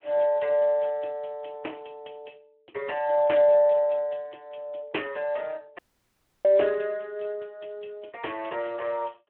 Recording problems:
phone line; 280 Hz to 3.3 kHz, Speex
audio cutting out; at 6 s for 0.5 s

